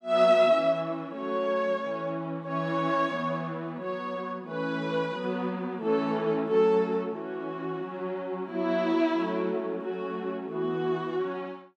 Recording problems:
none

